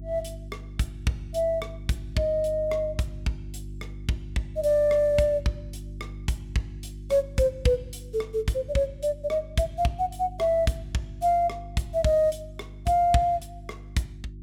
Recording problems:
hum; 50 Hz, harmonics up to 350 Hz, SNR 14 dB

